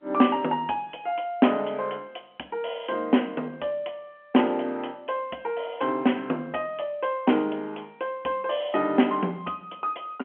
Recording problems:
phone line; 220 Hz to 3.2 kHz, G.711

